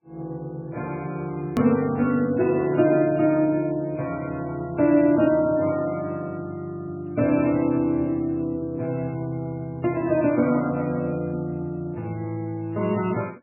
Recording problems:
lossy codec; MP3, log-spectral distance 2 dB, nothing above 20.1 kHz
click at an edit; at 1.5 s

